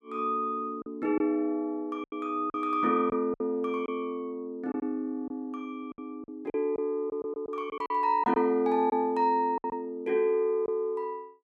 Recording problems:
packet loss; 7% of the sound replaced, filled with silence

